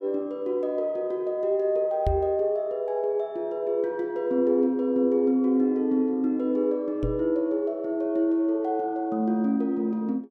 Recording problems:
microphone thump; at 2 s and at 7 s; peak +1 dB vs average level

